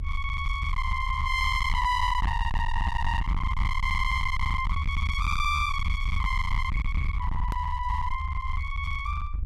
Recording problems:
distortion; hard clipping, uneven, signal-to-distortion ratio 5 dB
rumble; below 86 Hz, SNR 2 dB
edit click; at 7.5 s

